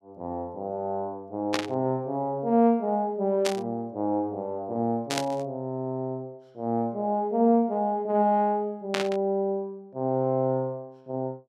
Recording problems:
burst of static; 4 times, first at 1.5 s; peak +4 dB vs average level

